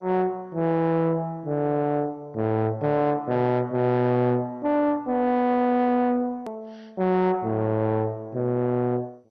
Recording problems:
lossy compression; MP2, log-spectral distance 2 dB
distorted audio; soft clipping, signal-to-distortion ratio 11 dB
hard cut with a click; at 6.5 s

